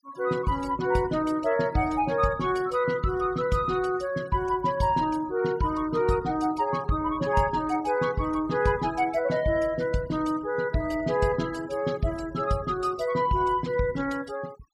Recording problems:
noise reduction artefacts; signal-to-artefact ratio 21 dB

